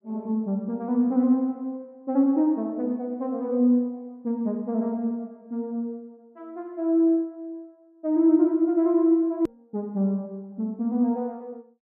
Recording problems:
edit click; at 9.5 s

